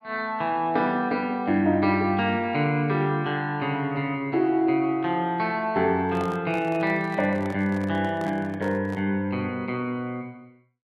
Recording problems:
microphone handling noise; from 6 to 9 s; peak -9 dB vs average level

